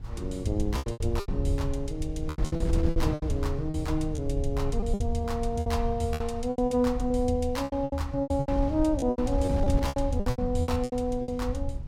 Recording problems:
rumble; below 80 Hz, SNR 7 dB
wind on the microphone; below 110 Hz, SNR 6 dB
lost packets; 16% of the sound replaced, filled with repeated pitch periods

